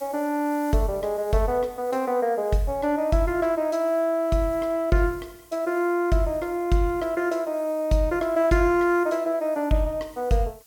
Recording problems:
background hiss; slope +2 dB per octave, SNR 25 dB

